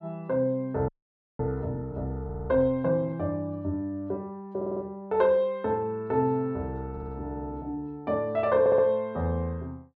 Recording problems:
frozen audio; at 1 s for 0.5 s
audio stuttering; 4 times, first at 2 s

